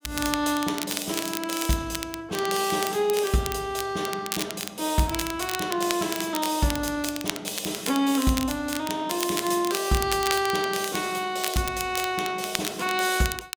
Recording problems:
crackling; vinyl, SNR 7 dB

